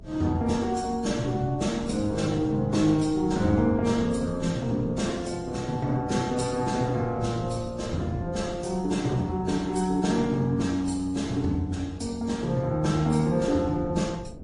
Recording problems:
lossy codec; AAC, then MP3, log-spectral distance 3 dB, nothing above 10.4 kHz
hum; 60 Hz, harmonics up to 660 Hz, SNR 23 dB
wind on the microphone; below 210 Hz, SNR 17 dB

